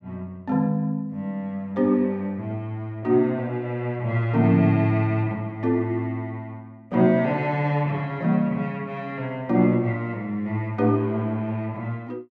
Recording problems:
none

